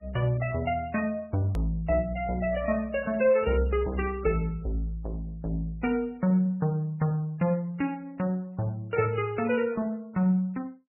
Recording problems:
lossy compression; MP3, log-spectral distance 2 dB, nothing above 2.9 kHz
click at an edit; at 1.5 s

